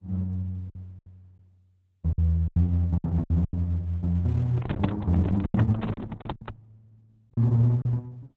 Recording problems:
lossy codec; Opus, then Opus, log-spectral distance 2 dB, nothing above 13.1 kHz
lost packets; 11% of the sound replaced, filled with silence
handling noise; from 4.5 to 6.5 s; peak +6 dB vs average level

